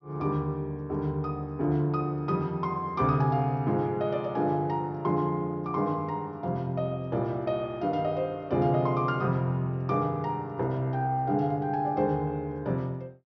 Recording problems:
treble cut off; nothing above 6 kHz

